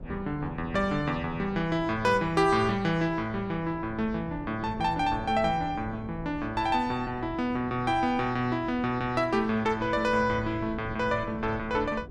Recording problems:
wind noise; below 240 Hz, SNR 15 dB

